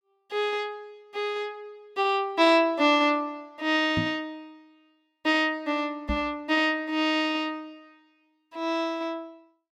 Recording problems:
microphone thump; at 4 s and at 6 s; peak 0 dB vs average level

